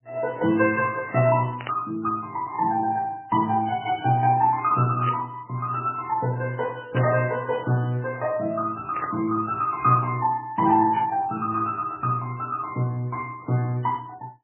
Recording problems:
lossy compression; MP2, then MP3, log-spectral distance 2 dB, nothing above 2.7 kHz
burst of static; 5 times, first at 1.5 s; peak -4 dB vs average level

